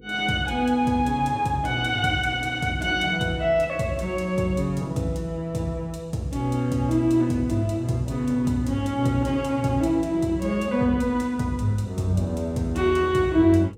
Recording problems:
hum; 50 Hz, harmonics up to 500 Hz, SNR 26 dB

